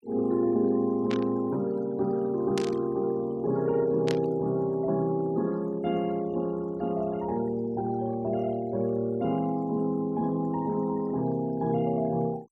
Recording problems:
denoising artefacts; signal-to-artefact ratio 25 dB
static burst; at 1 s, at 2.5 s and at 4 s; peak -3 dB vs average level

